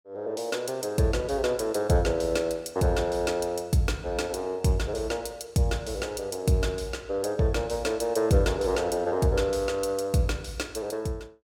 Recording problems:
none

